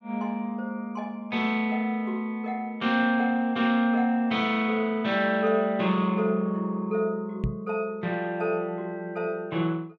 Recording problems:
microphone bump; at 7.5 s; peak +2 dB vs average level

